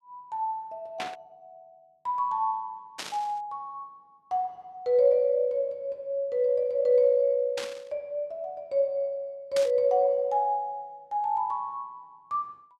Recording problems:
burst of static; 4 times, first at 1 s; peak -3 dB vs average level

